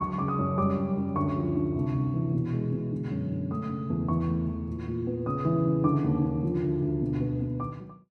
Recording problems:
none

